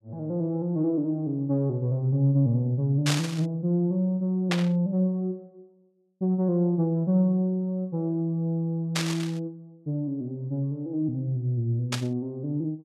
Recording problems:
static burst; 4 times, first at 3 s; peak +3 dB vs average level

